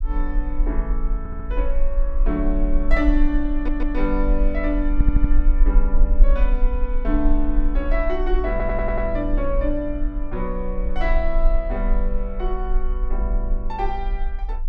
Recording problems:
rumble; below 40 Hz, SNR -2 dB
stutter; 4 times, first at 1 s

